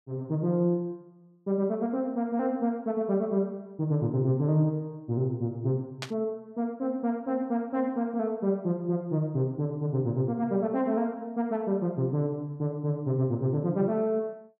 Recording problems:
static burst; at 6 s; peak -2 dB vs average level

